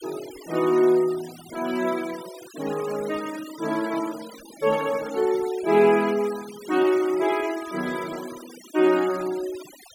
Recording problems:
denoising artefacts; signal-to-artefact ratio 17 dB

